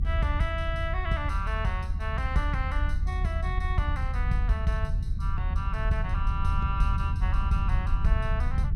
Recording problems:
low-frequency rumble; below 76 Hz, SNR -3 dB

